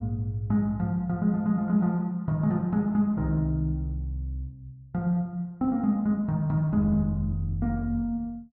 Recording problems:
none

